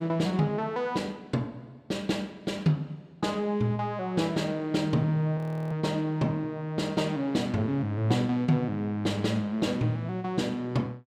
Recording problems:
frozen audio; at 5.5 s

